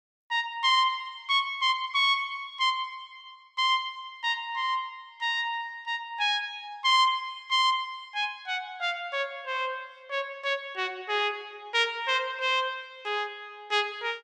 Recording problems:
none

